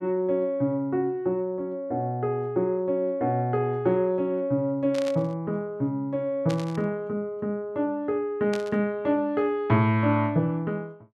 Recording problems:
static burst; at 5 s, at 6.5 s and at 8.5 s; peak -7 dB vs average level

